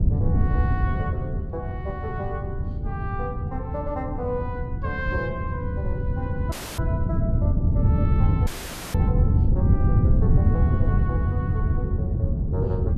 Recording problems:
wind noise; below 140 Hz, SNR -9 dB
audio cutting out; at 6.5 s and at 8.5 s

